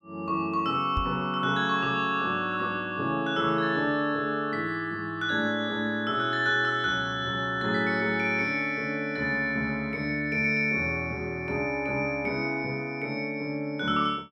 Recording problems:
knock on the microphone; at 1 s; peak 0 dB vs average level

